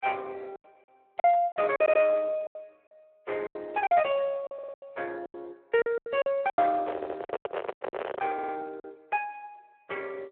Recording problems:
telephone audio; 340 Hz to 3.3 kHz, Speex
lost packets; 13% of the sound replaced, filled with silence
stutter; 4 times, first at 2 s
microphone handling noise; from 7 to 8.5 s; peak 0 dB vs average level

